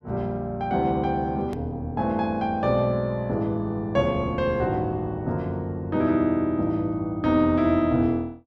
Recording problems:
edit click; at 1.5 s

